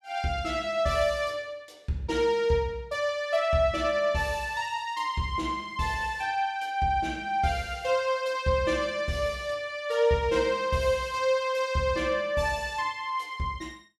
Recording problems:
none

